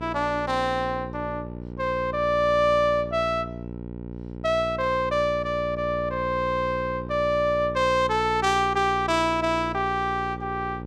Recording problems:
hum; 60 Hz, harmonics up to 960 Hz, SNR 11 dB

